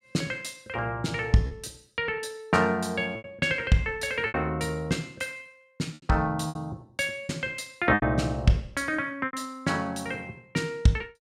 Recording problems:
lost packets; 6% of the sound replaced, filled with repeated pitch periods

